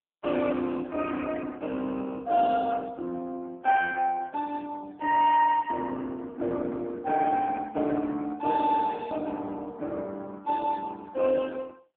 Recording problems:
telephone audio; 220 Hz to 2.3 kHz, AMR-NB

